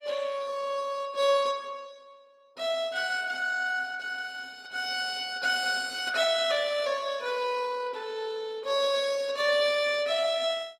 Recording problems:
lossy compression; Opus, log-spectral distance 3 dB, nothing above 20.1 kHz

